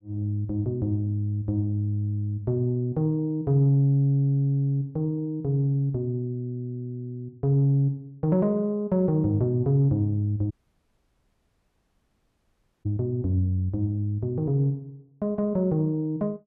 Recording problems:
dropout; at 11 s for 2.5 s

